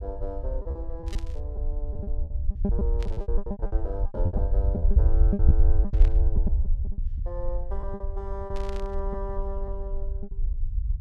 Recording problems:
low-frequency rumble; below 66 Hz, SNR -10 dB
packet loss; 13% of the sound replaced, filled with repeated pitch periods
static burst; 4 times, first at 1 s; peak +1 dB vs average level

